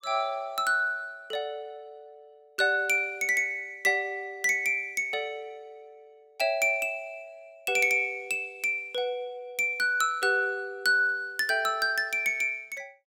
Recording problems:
none

